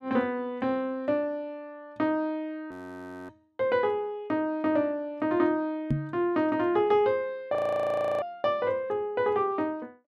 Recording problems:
audio freezing; at 2.5 s for 0.5 s and at 7.5 s for 0.5 s
knock on the microphone; at 6 s; peak +4 dB vs average level

